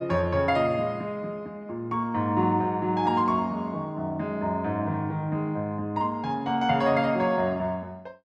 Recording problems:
none

